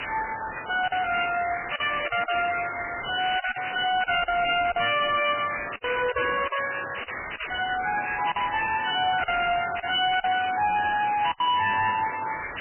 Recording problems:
lossy codec; MP3, log-spectral distance 18 dB, nothing above 2.5 kHz
distortion; hard clipping, signal-to-distortion ratio 5 dB
hiss; SNR 8 dB
packet loss; 6% of the sound replaced, filled with silence
static burst; 5 times, first at 2 s; peak -15 dB vs average level

